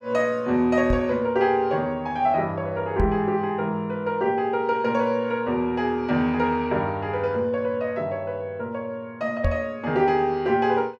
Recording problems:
microphone bump; at 1 s, at 3 s and at 9.5 s; peak +2 dB vs average level

